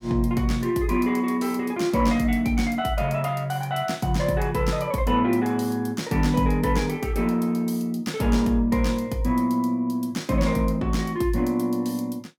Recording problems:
none

